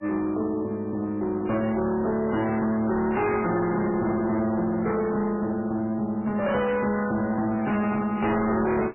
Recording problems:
lossy compression; MP3, log-spectral distance 3 dB, nothing above 2.5 kHz
distorted audio; hard clipping, uneven, signal-to-distortion ratio 7 dB

